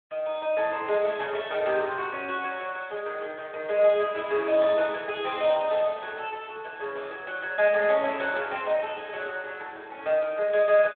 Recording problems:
telephone audio; 260 Hz to 3.8 kHz, Speex

